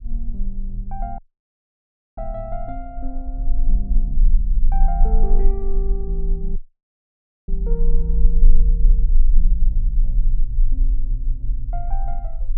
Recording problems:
rumble; below 36 Hz, strongest tone 20 Hz, SNR -12 dB
wind noise; below 190 Hz, SNR 14 dB
dropout; at 1 s for 1 s and at 6.5 s for 1 s

